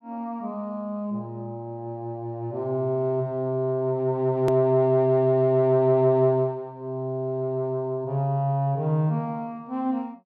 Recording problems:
click at an edit; at 4.5 s

